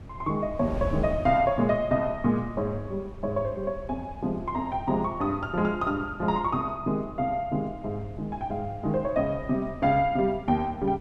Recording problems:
wind noise; below 140 Hz, SNR 15 dB

